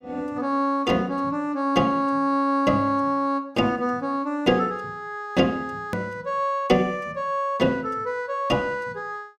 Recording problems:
hard cut with a click; at 6 s

